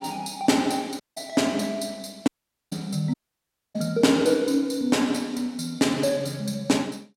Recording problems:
audio cutting out; at 1 s, at 2.5 s and at 3 s for 0.5 s

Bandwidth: 16.5 kHz